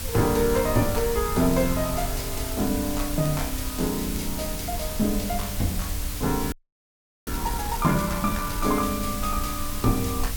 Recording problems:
background hiss; slope 0 dB per octave, SNR 6 dB
low-frequency rumble; below 68 Hz, SNR 9 dB
crackle; from 1.5 to 4 s; loose cable, SNR 20 dB
frozen audio; at 6.5 s for 1 s

